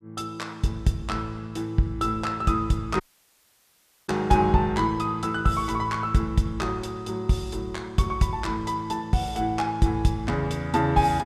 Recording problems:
audio cutting out; at 3 s for 1 s

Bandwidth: 14.5 kHz